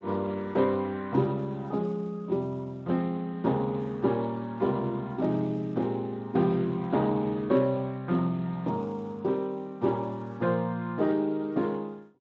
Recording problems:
lossy codec; Speex, log-spectral distance 2 dB

